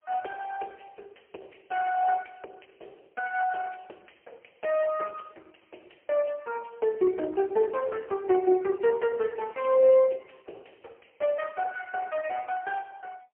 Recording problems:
telephone audio; 320 Hz to 2.2 kHz, AMR-NB, then MP3

